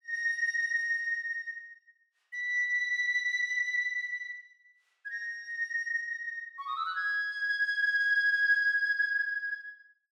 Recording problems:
none

